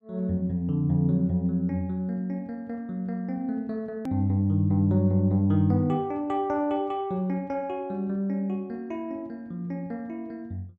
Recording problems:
edit click; at 4 s

